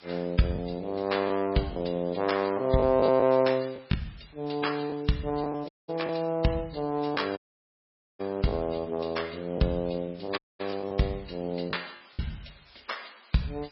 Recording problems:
lossy compression; MP3, log-spectral distance 9 dB, nothing above 5.3 kHz
background hiss; SNR 26 dB
packet loss; 4% of the sound replaced, filled with the last packet
dropout; at 5.5 s, at 7.5 s for 1 s and at 10 s

